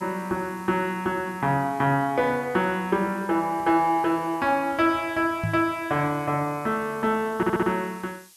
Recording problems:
hiss; SNR 25 dB
microphone bump; at 5.5 s; peak 0 dB vs average level
audio stuttering; at 7.5 s

